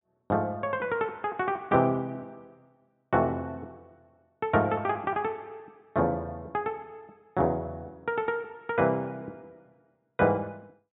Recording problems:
treble missing; nothing above 4 kHz

